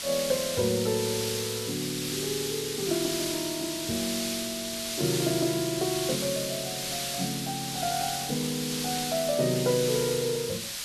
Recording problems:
hiss; SNR 1 dB

